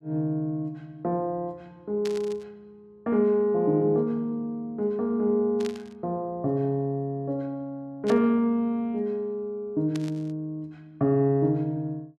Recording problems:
static burst; 4 times, first at 2 s; peak -7 dB vs average level

